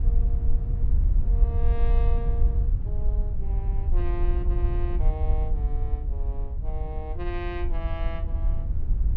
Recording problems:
wind noise; below 58 Hz, SNR -11 dB

